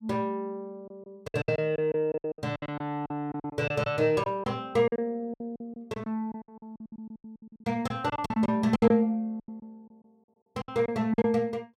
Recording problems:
lost packets; 17% of the sound replaced, filled with silence

